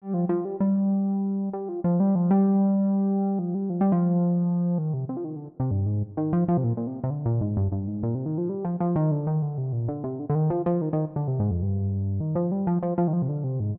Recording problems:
none

